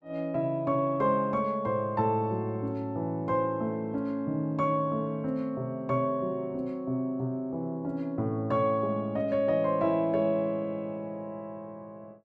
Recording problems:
none

